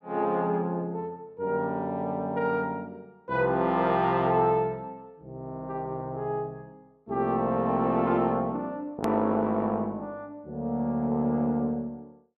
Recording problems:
click at an edit; at 9 s

